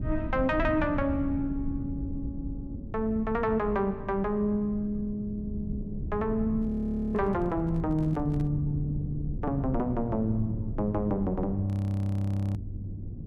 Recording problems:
low-frequency rumble; below 170 Hz, SNR 7 dB
handling noise; from 6.5 to 8.5 s; peak -6 dB vs average level
audio freezing; at 6.5 s and at 12 s for 1 s

